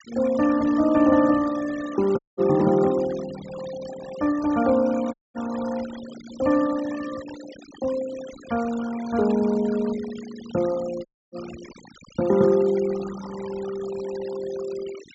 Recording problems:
low-pass filter; nothing above 7.7 kHz
noise reduction artefacts; signal-to-artefact ratio 17 dB
dropout; at 2 s, at 5 s and at 11 s

